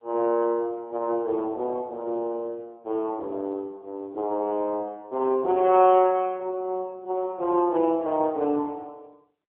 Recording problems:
telephone audio; 240 Hz to 3.3 kHz, AMR-NB

